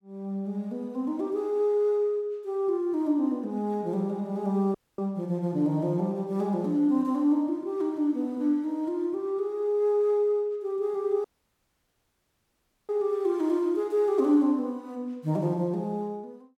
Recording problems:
audio cutting out; at 5 s and at 11 s for 1.5 s

